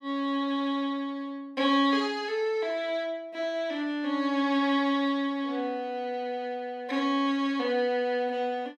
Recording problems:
none

